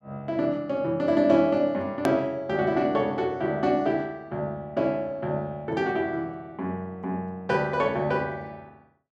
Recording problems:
hard cut with a click; at 2 s

